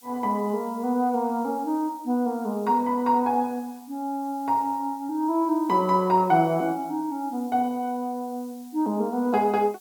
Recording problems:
background hiss; SNR 26 dB

